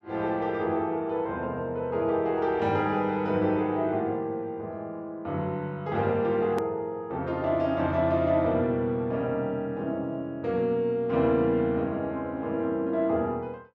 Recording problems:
hard cut with a click; at 6.5 s

